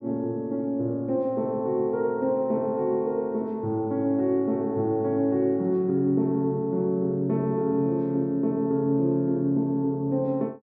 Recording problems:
none

